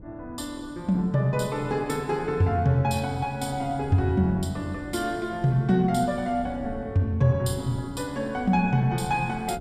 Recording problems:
wind noise; below 260 Hz, SNR 17 dB

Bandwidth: 15 kHz